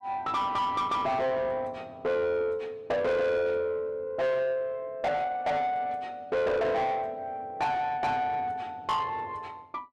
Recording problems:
distorted audio; soft clipping, signal-to-distortion ratio 7 dB

